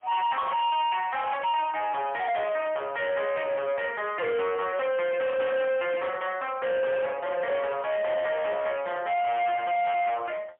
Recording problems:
telephone audio; 370 Hz to 3.4 kHz, AMR-NB, then MP3
distorted audio; soft clipping, signal-to-distortion ratio 8 dB

